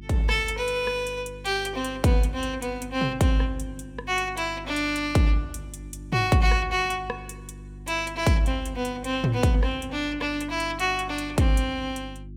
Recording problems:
electrical hum; 50 Hz, harmonics up to 350 Hz, SNR 17 dB

